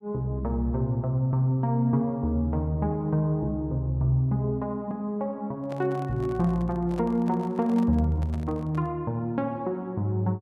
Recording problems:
microphone handling noise; from 5.5 to 9 s; peak -10 dB vs average level

